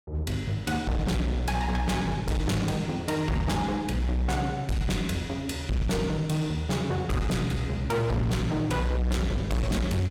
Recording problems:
distortion; hard clipping, signal-to-distortion ratio 7 dB

